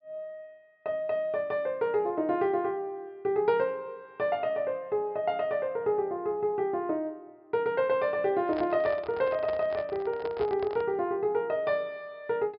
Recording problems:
low-pass filter; nothing above 5.5 kHz
handling noise; from 8.5 to 11 s; peak -5 dB vs average level

